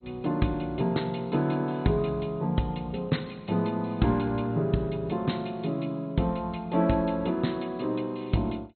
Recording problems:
lossy compression; MP2, log-spectral distance 3 dB, nothing above 4.2 kHz

